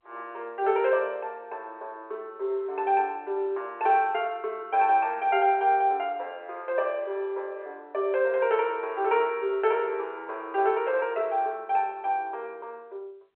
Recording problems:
phone line; 340 Hz to 3.3 kHz, G.711

